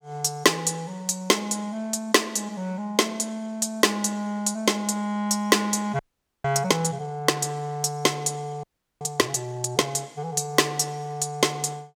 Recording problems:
audio freezing; at 6 s and at 8.5 s

